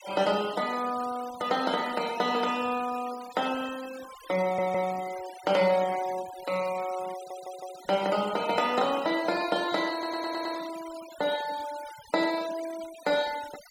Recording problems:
noise reduction artefacts; signal-to-artefact ratio 15 dB
stutter; at 4.5 s, at 7 s and at 10 s

